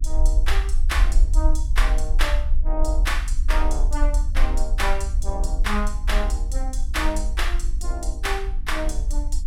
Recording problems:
hum; 50 Hz, harmonics up to 300 Hz, SNR 18 dB
low-frequency rumble; below 48 Hz, strongest tone 20 Hz, SNR -4 dB

